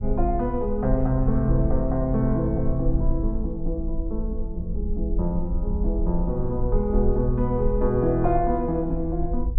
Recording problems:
rumble; below 54 Hz, SNR 4 dB

